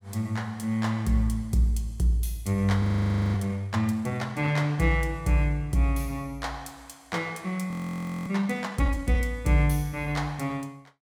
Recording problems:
audio freezing; at 3 s for 0.5 s and at 7.5 s for 0.5 s

